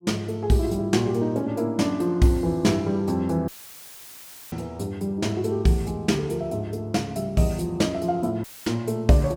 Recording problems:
dropout; at 3.5 s for 1 s and at 8.5 s; filled with static

